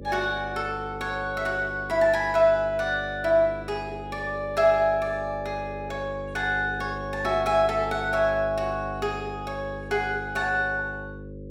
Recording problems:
hum; 50 Hz, harmonics up to 550 Hz, SNR 13 dB

